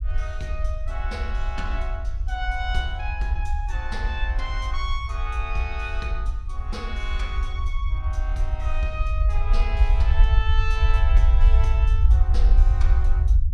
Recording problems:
low-frequency rumble; below 62 Hz, SNR -9 dB

